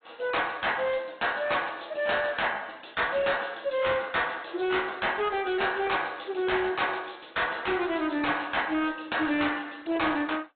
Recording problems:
treble missing; nothing above 4 kHz
codec artefacts; AAC, log-spectral distance 7 dB
distorted audio; hard clipping, uneven, signal-to-distortion ratio 11 dB

